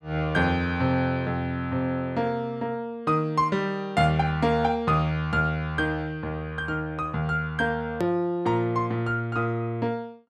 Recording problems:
click at an edit; at 8 s

